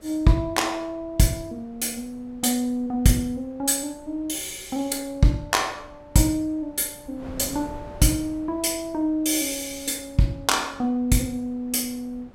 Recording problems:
wind noise; below 450 Hz, SNR 23 dB

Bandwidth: 16.5 kHz